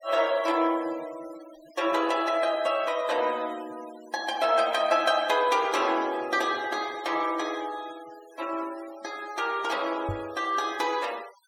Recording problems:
denoising artefacts; signal-to-artefact ratio 20 dB
microphone bump; at 10 s; peak -3 dB vs average level

